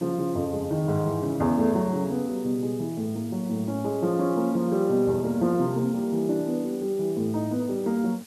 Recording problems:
background hiss; slope +1 dB per octave, SNR 23 dB

